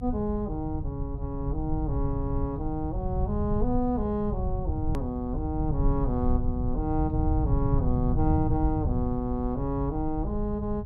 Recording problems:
low-frequency rumble; below 110 Hz, SNR 1 dB
hard cut with a click; at 5 s

